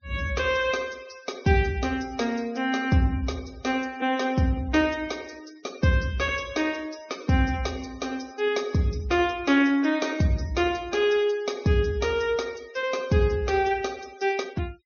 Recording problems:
treble missing; nothing above 6.4 kHz
noise reduction artefacts; signal-to-artefact ratio 22 dB

